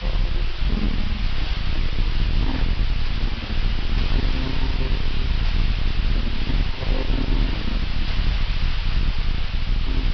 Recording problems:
low-pass filter; nothing above 5.5 kHz
lossy codec; AAC, log-spectral distance 4 dB
distorted audio; soft clipping, signal-to-distortion ratio 7 dB
hiss; SNR 0 dB
low-frequency rumble; below 54 Hz, SNR -6 dB
burst of static; 4 times, first at 2.5 s; peak 0 dB vs average level

